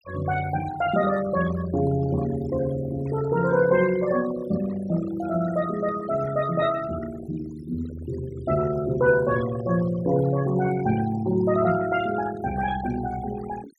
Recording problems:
noise reduction artefacts; signal-to-artefact ratio 15 dB

